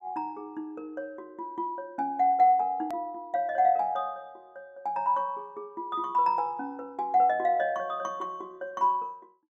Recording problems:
click at an edit; at 3 s

